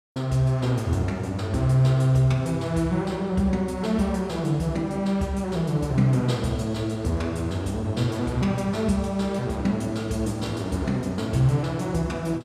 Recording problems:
none

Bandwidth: 14.5 kHz